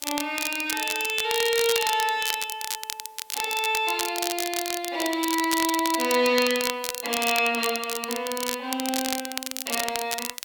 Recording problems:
hiss; slope -1 dB per octave, SNR 29 dB
crackling; vinyl, SNR 4 dB

